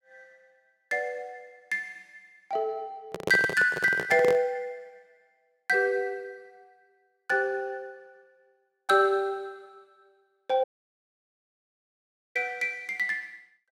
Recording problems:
handling noise; from 3 to 4.5 s; peak +1 dB vs average level
dropout; at 11 s for 1.5 s

